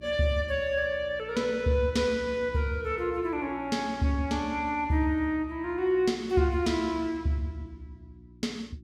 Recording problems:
hum; 60 Hz, harmonics up to 360 Hz, SNR 23 dB

